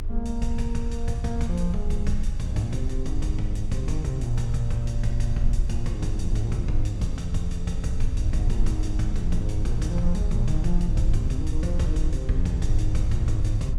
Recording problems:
electrical hum; 60 Hz, harmonics up to 480 Hz, SNR 27 dB
rumble; below 58 Hz, strongest tone 20 Hz, SNR 0 dB

